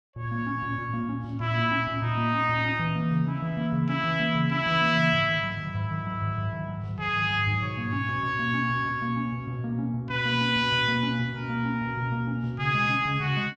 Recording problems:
none

